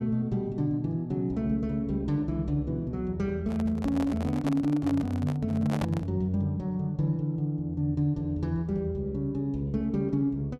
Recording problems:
microphone handling noise; from 3.5 to 6 s; peak -2 dB vs average level

